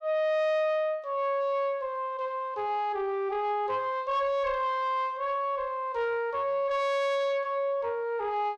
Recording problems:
distortion; soft clipping, signal-to-distortion ratio 11 dB

